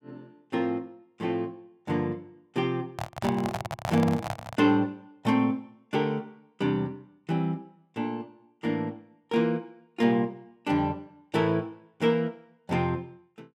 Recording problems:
microphone handling noise; from 3 to 4.5 s; peak +1 dB vs average level

